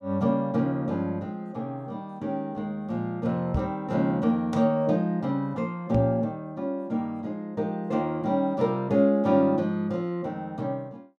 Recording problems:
microphone thump; at 3.5 s and at 6 s; peak +2 dB vs average level

